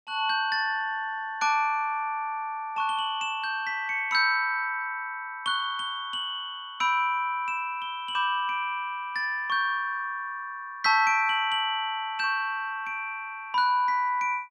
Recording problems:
none

